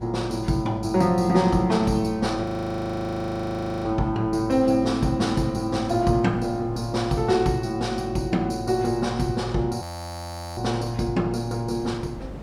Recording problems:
electrical hum; 50 Hz, harmonics up to 550 Hz, SNR 18 dB
wind noise; below 560 Hz, SNR 22 dB
audio freezing; at 2.5 s for 1.5 s and at 10 s for 1 s

